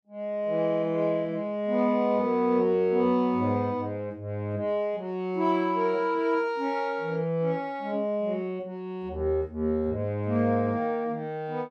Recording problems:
none

